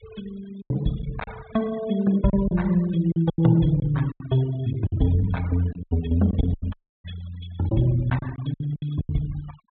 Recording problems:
treble missing; nothing above 4 kHz
denoising artefacts; signal-to-artefact ratio 20 dB
packet loss; 10% of the sound replaced, filled with silence
audio cutting out; at 6.5 s

